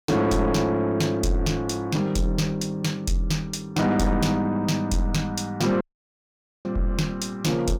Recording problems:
distortion; soft clipping, signal-to-distortion ratio 12 dB
audio cutting out; at 6 s for 1 s

